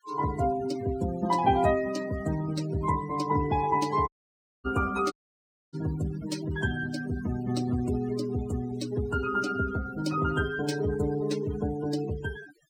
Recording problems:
denoising artefacts; signal-to-artefact ratio 15 dB
audio cutting out; at 4 s for 0.5 s and at 5 s for 0.5 s

